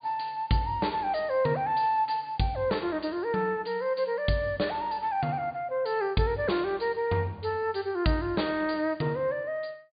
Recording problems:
low-pass filter; nothing above 4.8 kHz

